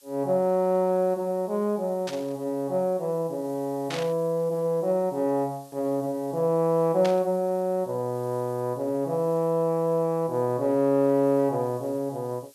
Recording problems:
background hiss; SNR 27 dB
burst of static; at 2 s, at 4 s and at 7 s; peak -4 dB vs average level

